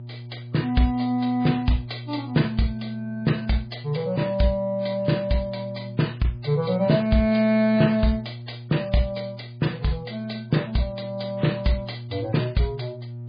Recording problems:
codec artefacts; MP3, log-spectral distance 4 dB, nothing above 4.8 kHz
electrical hum; 60 Hz, harmonics up to 600 Hz, SNR 13 dB

